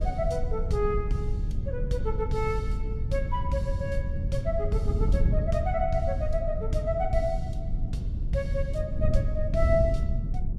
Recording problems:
wind on the microphone; below 96 Hz, SNR 0 dB

